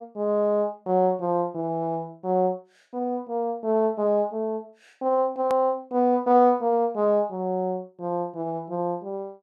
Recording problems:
hard cut with a click; at 5.5 s

